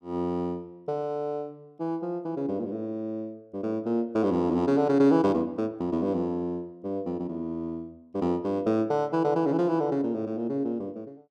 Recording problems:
none

